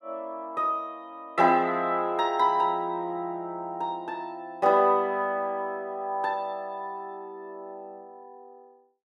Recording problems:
none

